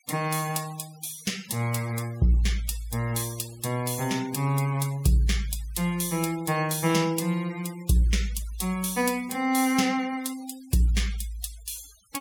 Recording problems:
noise reduction artefacts; signal-to-artefact ratio 18 dB

